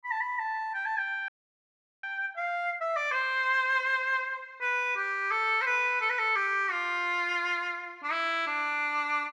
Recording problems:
audio freezing; at 1.5 s for 0.5 s

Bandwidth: 14.5 kHz